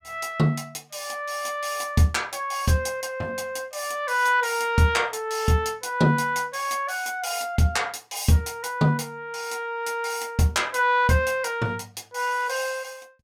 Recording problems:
none

